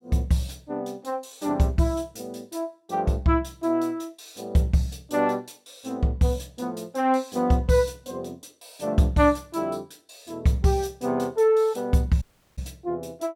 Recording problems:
dropout; at 12 s

